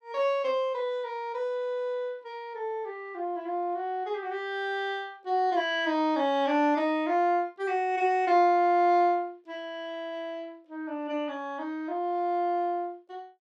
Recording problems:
none

